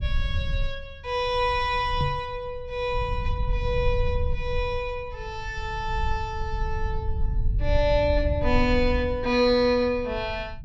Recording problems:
low-pass filter; nothing above 8 kHz
low-frequency rumble; below 72 Hz, SNR 5 dB
microphone bump; at 2 s; peak +2 dB vs average level

